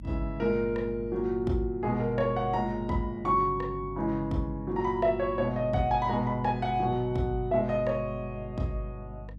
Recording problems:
hum; 50 Hz, harmonics up to 300 Hz, SNR 14 dB

